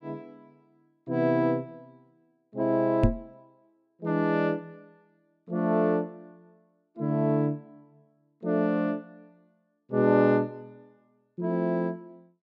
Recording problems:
microphone bump; at 3 s; peak +8 dB vs average level

